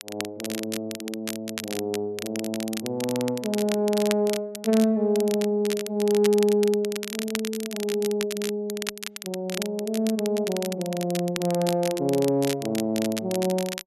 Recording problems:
crackling; vinyl, SNR 9 dB

